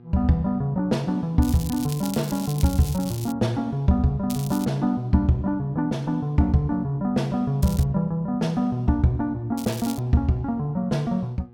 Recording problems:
electrical hum; 60 Hz, harmonics up to 1.2 kHz, SNR 25 dB
crackling; 4 times, first at 1.5 s; loose cable, SNR 15 dB

